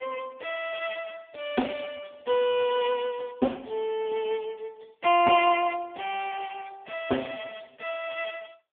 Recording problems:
phone line; 280 Hz to 3.3 kHz, AMR-NB

